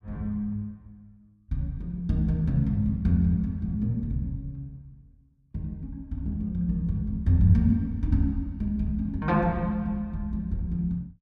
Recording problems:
none

